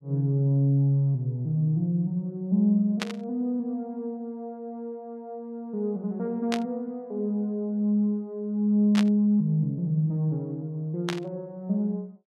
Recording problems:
static burst; 4 times, first at 3 s; peak 0 dB vs average level

